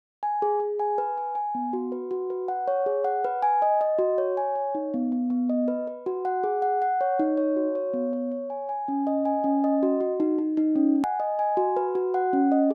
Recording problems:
hard cut with a click; at 11 s

